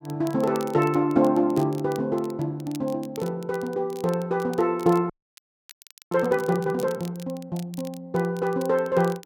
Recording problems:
crackle; vinyl, SNR 22 dB
audio freezing; at 5 s for 1 s

